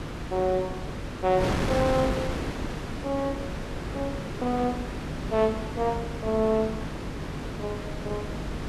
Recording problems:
hum; 50 Hz, harmonics up to 300 Hz, SNR 12 dB
wind noise; below 930 Hz, SNR 5 dB

